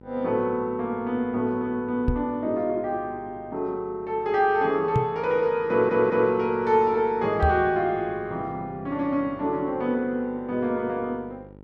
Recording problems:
hum; 50 Hz, harmonics up to 1.4 kHz, SNR 23 dB
microphone thump; at 2 s, at 5 s and at 7.5 s; peak +5 dB vs average level
stutter; at 5.5 s

